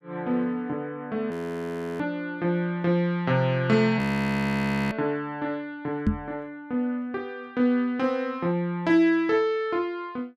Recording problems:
audio freezing; at 1.5 s for 0.5 s and at 4 s for 1 s
microphone bump; at 6 s; peak +6 dB vs average level

